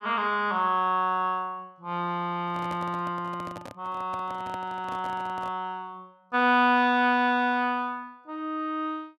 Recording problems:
handling noise; from 2.5 to 5.5 s; peak -9 dB vs average level

